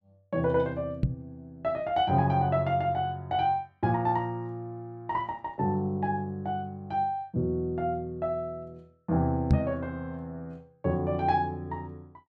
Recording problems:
microphone bump; at 1 s and at 9.5 s; peak +9 dB vs average level

